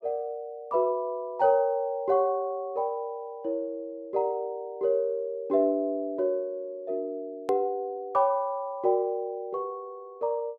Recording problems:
hard cut with a click; at 7.5 s

